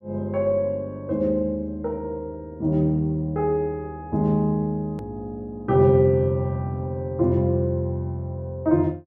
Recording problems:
hard cut with a click; at 5 s

